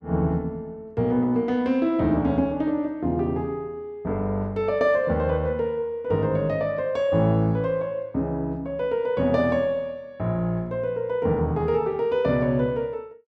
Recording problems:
none

